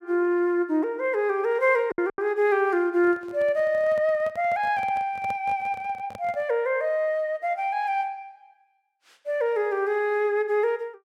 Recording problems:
packet loss; 1.4% of the sound replaced, filled with silence
handling noise; from 3 to 6.5 s; peak -11 dB vs average level

